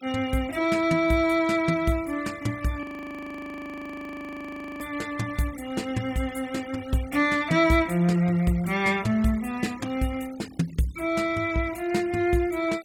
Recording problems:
denoising artefacts; signal-to-artefact ratio 22 dB
audio freezing; at 3 s for 2 s

